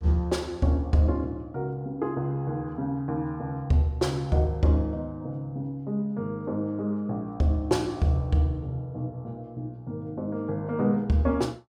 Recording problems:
none

